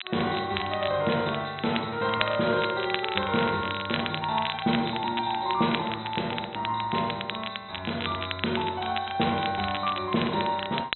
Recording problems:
treble missing; nothing above 4 kHz
crackle; vinyl, SNR 7 dB

